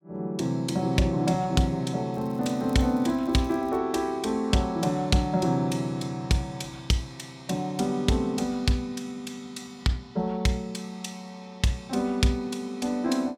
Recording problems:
crackling; from 2 to 4 s; loose cable, SNR 28 dB

